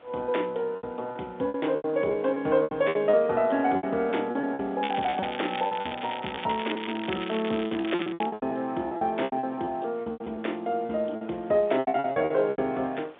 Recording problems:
telephone audio; 240 Hz to 3.6 kHz, G.711
wind on the microphone; below 1.9 kHz, SNR 24 dB
packet loss; 17% of the sound replaced, filled with repeated pitch periods
crackling; from 5 to 8.5 s; loose cable, SNR 10 dB

